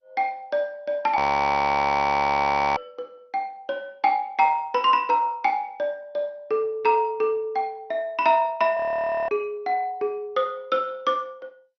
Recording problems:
codec artefacts; MP2, log-spectral distance 2 dB, nothing above 6 kHz
frozen audio; at 1 s for 1.5 s and at 9 s for 0.5 s

